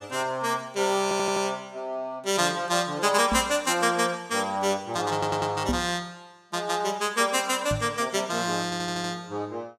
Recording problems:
stutter; at 1 s, at 5 s and at 8.5 s
microphone thump; at 3.5 s, at 5.5 s and at 7.5 s; peak +2 dB vs average level

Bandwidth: 15 kHz